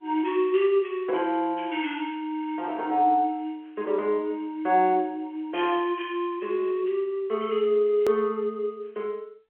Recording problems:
phone line; 320 Hz to 3.3 kHz, G.711
click at an edit; at 8 s

